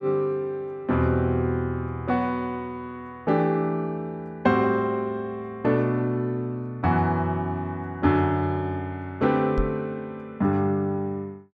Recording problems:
microphone bump; at 9.5 s; peak +1 dB vs average level

